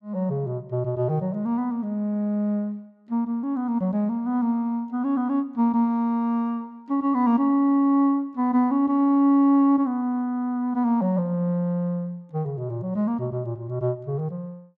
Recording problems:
none

